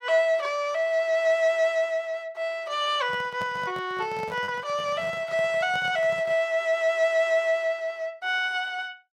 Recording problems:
packet loss; 0.4% of the sound replaced, filled with repeated pitch periods
microphone handling noise; from 3 to 6.5 s; peak -9 dB vs average level

